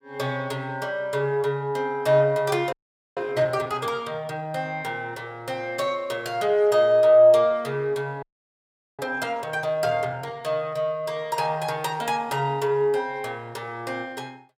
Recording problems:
frozen audio; at 2.5 s and at 8 s for 1 s

